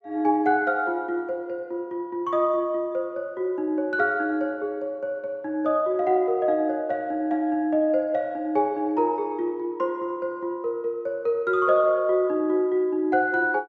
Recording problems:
treble missing; nothing above 8 kHz

